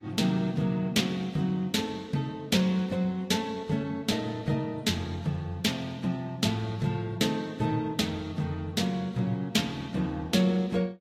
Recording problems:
lossy codec; AAC, then Vorbis, log-spectral distance 3 dB, nothing above 15.1 kHz

